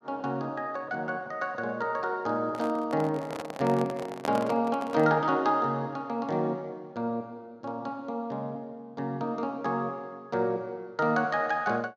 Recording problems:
microphone handling noise; from 2.5 to 5 s; peak 0 dB vs average level

